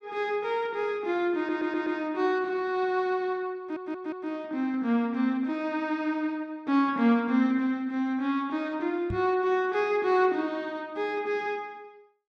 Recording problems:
audio stuttering; at 1.5 s and at 3.5 s
microphone bump; at 9 s; peak -2 dB vs average level

